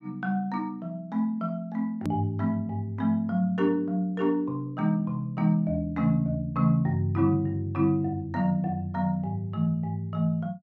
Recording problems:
click at an edit; at 2 s

